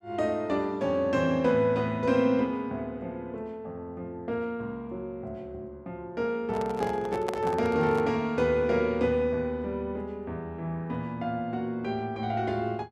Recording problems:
handling noise; from 6.5 to 8 s; peak -1 dB vs average level

